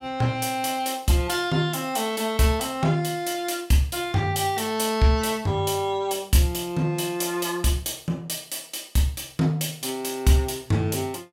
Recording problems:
none

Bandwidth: 16.5 kHz